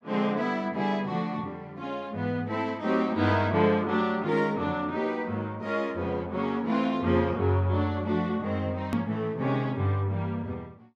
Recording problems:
hard cut with a click; at 9 s

